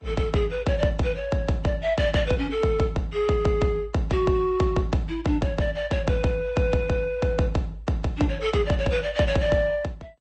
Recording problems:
codec artefacts; Vorbis, then MP2, log-spectral distance 2 dB, nothing above 7.3 kHz

